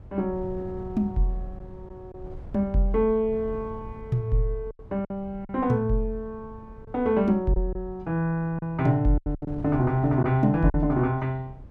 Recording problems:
wind noise; below 140 Hz, SNR 18 dB
packet loss; 5% of the sound replaced, filled with silence

